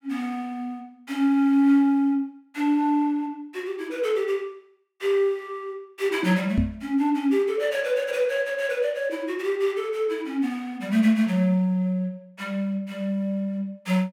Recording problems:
knock on the microphone; at 6.5 s; peak +4 dB vs average level

